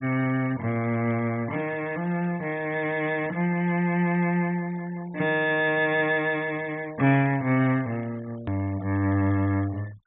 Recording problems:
low-pass filter; nothing above 3.8 kHz
noise reduction artefacts; signal-to-artefact ratio 23 dB
edit click; at 8.5 s

